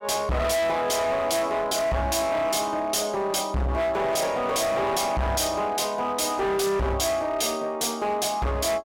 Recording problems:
distortion; hard clipping, uneven, signal-to-distortion ratio 6 dB

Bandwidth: 16.5 kHz